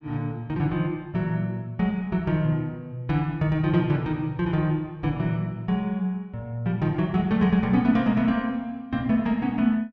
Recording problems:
none

